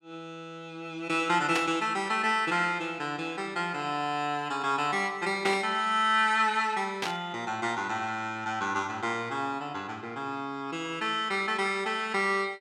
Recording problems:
burst of static; at 1.5 s, at 5.5 s and at 7 s; peak +2 dB vs average level

